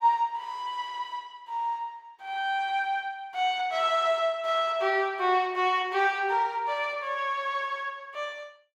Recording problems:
none

